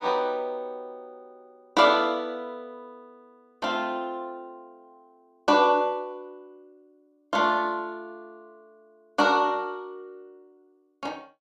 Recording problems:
none

